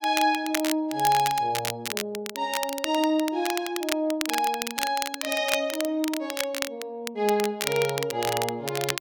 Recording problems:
crackling; vinyl, SNR 5 dB

